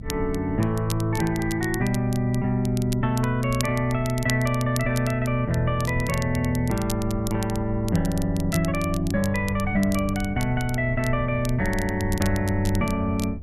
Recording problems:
rumble; below 86 Hz, SNR 12 dB
crackling; vinyl, SNR 14 dB

